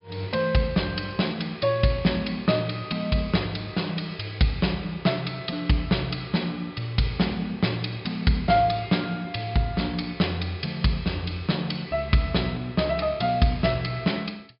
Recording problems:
low-pass filter; nothing above 5.5 kHz

